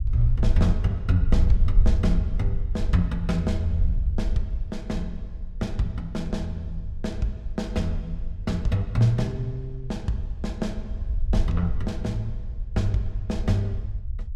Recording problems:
rumble; below 62 Hz, SNR 2 dB

